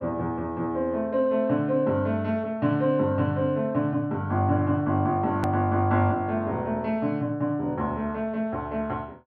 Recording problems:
treble missing; nothing above 5.7 kHz
edit click; at 5.5 s

